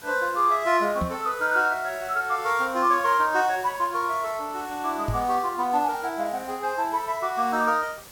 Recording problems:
background hiss; slope -2 dB per octave, SNR 20 dB
microphone bump; at 1 s and at 5 s; peak -1 dB vs average level

